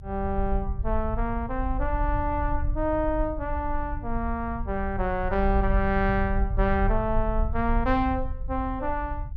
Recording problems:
rumble; below 66 Hz, SNR 3 dB

